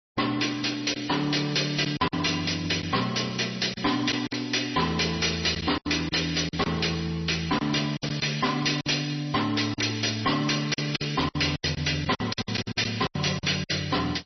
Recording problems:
lossy compression; MP3, log-spectral distance 9 dB, nothing above 5.8 kHz
distortion; hard clipping, signal-to-distortion ratio 11 dB
lost packets; 9% of the sound replaced, filled with silence

